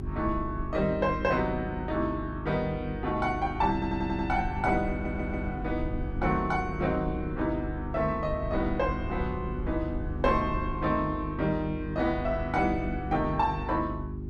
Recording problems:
hum; 50 Hz, harmonics up to 400 Hz, SNR 8 dB
rumble; below 74 Hz, SNR 10 dB
stutter; at 3.5 s and at 5 s

